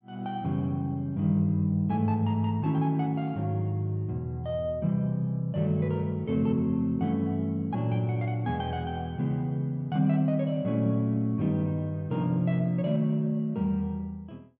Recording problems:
none

